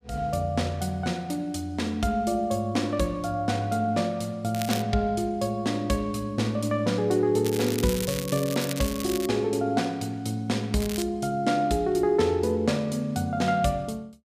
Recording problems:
crackle; at 4.5 s, from 7.5 to 9.5 s and at 11 s; loose cable, SNR 9 dB

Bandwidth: 15 kHz